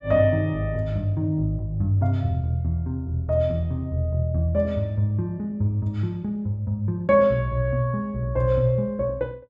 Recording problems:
none

